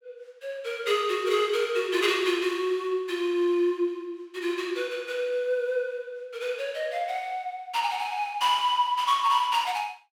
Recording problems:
none

